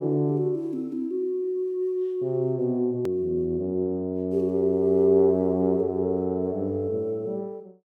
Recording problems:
edit click; at 3 s

